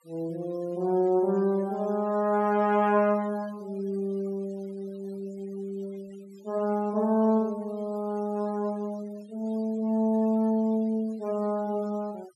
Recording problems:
noise reduction artefacts; signal-to-artefact ratio 26 dB

